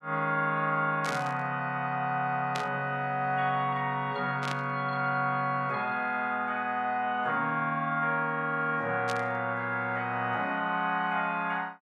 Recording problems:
burst of static; 4 times, first at 1 s; peak -3 dB vs average level

